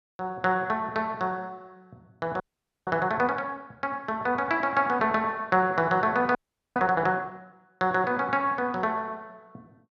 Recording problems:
audio freezing; at 2.5 s and at 6.5 s

